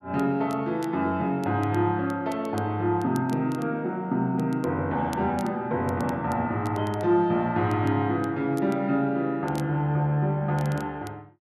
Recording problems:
crackle; vinyl, SNR 25 dB

